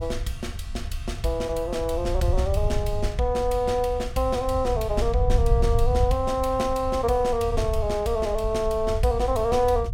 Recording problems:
wind noise; below 84 Hz, SNR 5 dB

